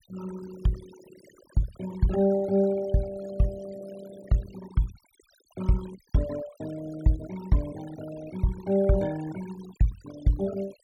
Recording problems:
noise reduction artefacts; signal-to-artefact ratio 17 dB

